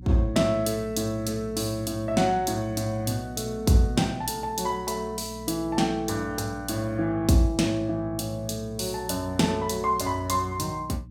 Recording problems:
hum; 60 Hz, harmonics up to 300 Hz, SNR 16 dB

